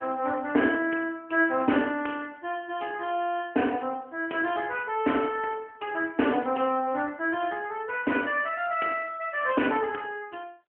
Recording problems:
phone line; 220 Hz to 3.2 kHz, AMR-NB

